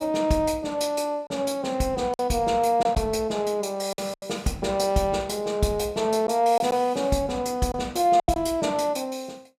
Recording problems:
packet loss; 4% of the sound replaced, filled with silence

